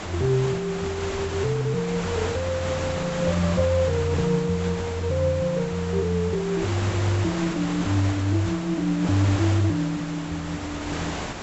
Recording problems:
low-pass filter; nothing above 7.8 kHz
hiss; slope -5 dB per octave, SNR 8 dB

